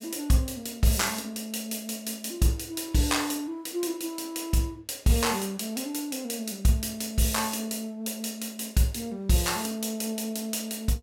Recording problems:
none

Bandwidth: 16.5 kHz